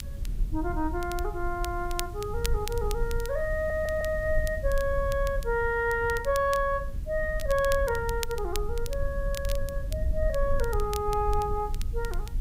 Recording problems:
background hiss; slope 0 dB per octave, SNR 27 dB
rumble; below 60 Hz, SNR 5 dB
crackle; vinyl, SNR 13 dB
audio stuttering; at 3.5 s

